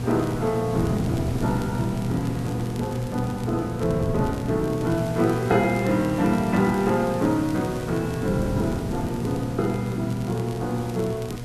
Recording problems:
electrical hum; 60 Hz, harmonics up to 1.2 kHz, SNR 7 dB
hiss; slope -2 dB per octave, SNR 18 dB
wind noise; below 280 Hz, SNR 8 dB
crackling; vinyl, SNR 23 dB

